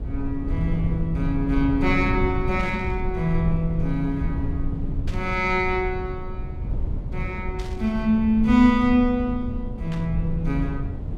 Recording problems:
rumble; below 100 Hz, SNR 6 dB
static burst; 4 times, first at 2.5 s; peak -13 dB vs average level

